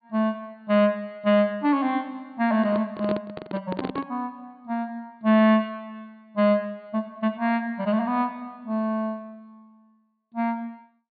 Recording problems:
treble missing; nothing above 4.6 kHz
handling noise; from 2.5 to 4 s; peak -1 dB vs average level

